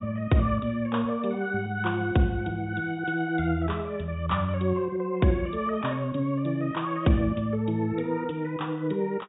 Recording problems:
treble cut off; nothing above 4 kHz

